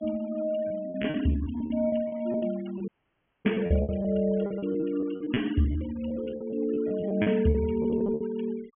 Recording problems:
low-pass filter; nothing above 3.2 kHz
denoising artefacts; signal-to-artefact ratio 22 dB
lost packets; 16% of the sound replaced, filled with repeated pitch periods
dropout; at 3 s for 0.5 s

